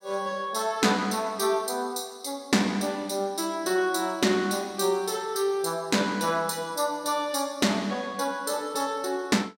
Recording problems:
none

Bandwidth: 16 kHz